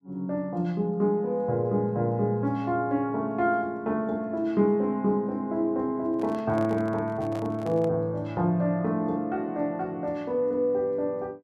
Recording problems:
microphone handling noise; from 6 to 8 s; peak -9 dB vs average level

